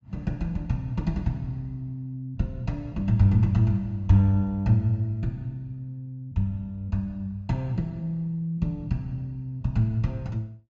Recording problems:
treble missing; nothing above 8 kHz

